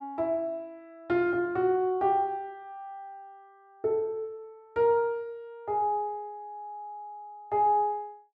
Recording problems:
none

